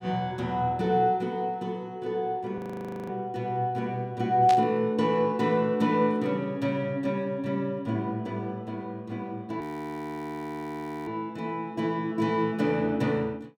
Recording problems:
audio freezing; at 2.5 s for 0.5 s and at 9.5 s for 1.5 s
static burst; at 4.5 s; peak -3 dB vs average level

